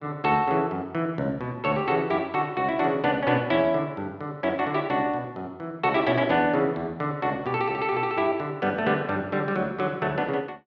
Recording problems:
treble missing; nothing above 8 kHz

